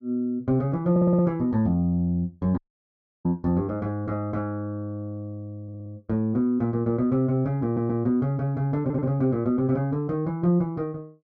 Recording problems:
stutter; 4 times, first at 1 s
dropout; at 2.5 s for 0.5 s

